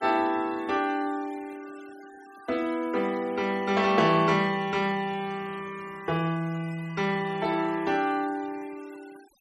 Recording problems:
noise reduction artefacts; signal-to-artefact ratio 22 dB

